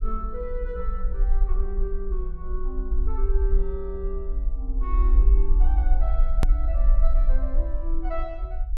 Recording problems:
rumble; below 46 Hz, SNR -10 dB
click at an edit; at 6.5 s

